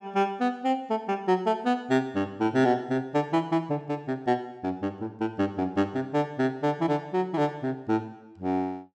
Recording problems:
none

